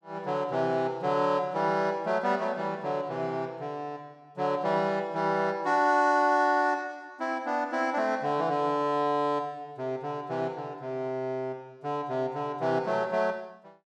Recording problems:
none

